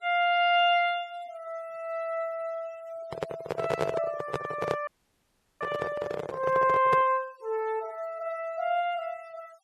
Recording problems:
noise reduction artefacts; signal-to-artefact ratio 23 dB
microphone handling noise; from 3 to 7 s; peak +3 dB vs average level
frozen audio; at 5 s for 0.5 s

